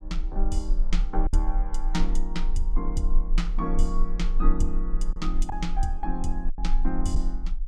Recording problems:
rumble; below 32 Hz, strongest tone 22 Hz, SNR -3 dB
packet loss; 3% of the sound replaced, filled with silence

